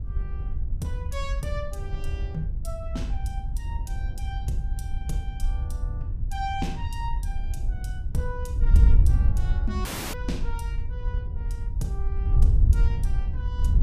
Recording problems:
wind noise; below 76 Hz, SNR -9 dB
dropout; at 10 s

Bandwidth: 14.5 kHz